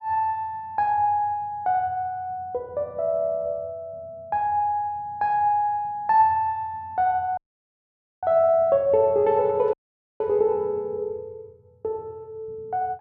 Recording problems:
dropout; at 7.5 s for 1 s and at 9.5 s

